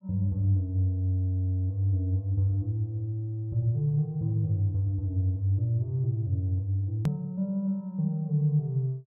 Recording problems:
edit click; at 7 s

